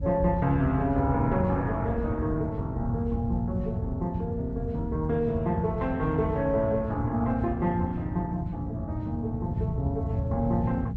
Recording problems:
lossy codec; Opus, log-spectral distance 2 dB
low-frequency rumble; below 130 Hz, SNR 3 dB

